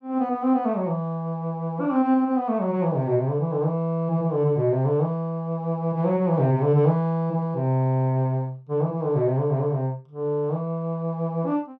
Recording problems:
none

